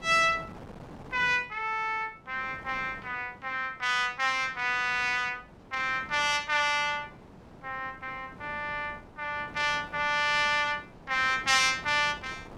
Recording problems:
wind on the microphone; below 810 Hz, SNR 21 dB

